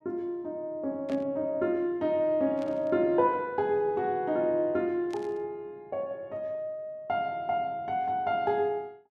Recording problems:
static burst; at 1 s, at 2.5 s and at 5 s; peak -13 dB vs average level

